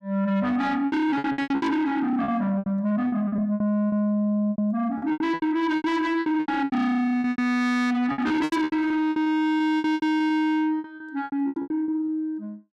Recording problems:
distorted audio; soft clipping, signal-to-distortion ratio 6 dB
lost packets; 19% of the sound replaced, filled with repeated pitch periods

